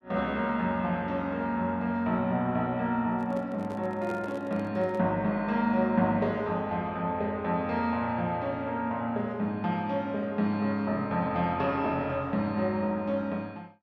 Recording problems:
handling noise; from 3 to 5 s; peak -8 dB vs average level

